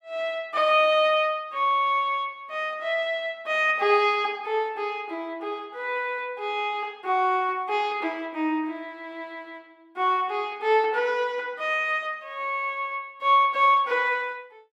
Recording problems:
none

